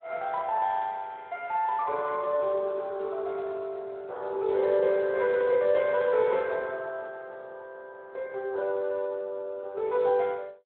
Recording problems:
telephone audio; 340 Hz to 3.2 kHz, Speex

